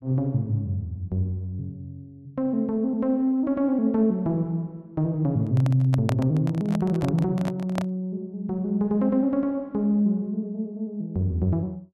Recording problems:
microphone handling noise; from 5.5 to 8 s; peak +1 dB vs average level

